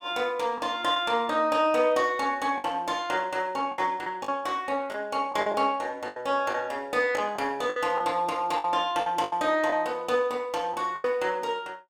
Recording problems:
packet loss; 7% of the sound replaced, filled with the last packet

